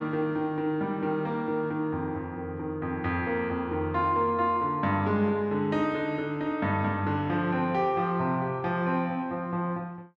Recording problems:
none

